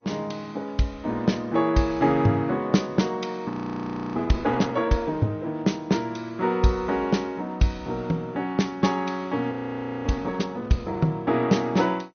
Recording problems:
codec artefacts; Vorbis, then MP2, log-spectral distance 2 dB, nothing above 6.3 kHz
frozen audio; at 3.5 s for 0.5 s and at 9.5 s for 0.5 s

